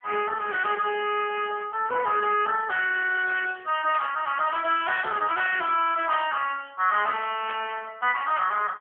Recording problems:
phone line; 370 Hz to 3.3 kHz, AMR-NB
burst of static; at 4 s, at 6 s and at 7.5 s; peak -6 dB vs average level

